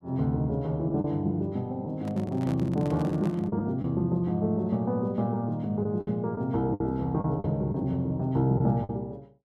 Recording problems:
lost packets; 5% of the sound replaced, filled with the last packet
microphone handling noise; from 2 to 3.5 s; peak -8 dB vs average level

